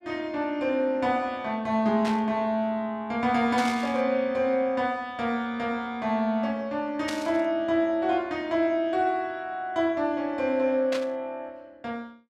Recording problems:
burst of static; 4 times, first at 2 s; peak -4 dB vs average level

